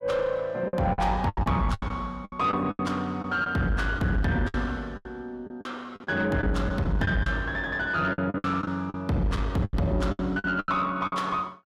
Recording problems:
distortion; soft clipping, signal-to-distortion ratio 11 dB
packet loss; 13% of the sound replaced, filled with the last packet

